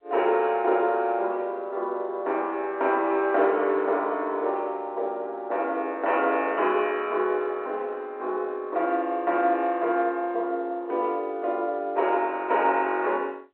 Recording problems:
phone line; 300 Hz to 3.4 kHz, G.711

